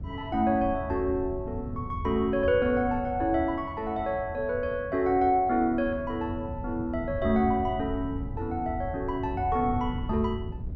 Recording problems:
wind on the microphone; below 120 Hz, SNR 10 dB

